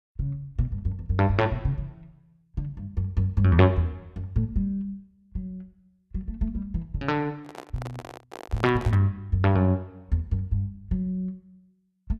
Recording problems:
handling noise; from 7.5 to 9 s; peak -7 dB vs average level

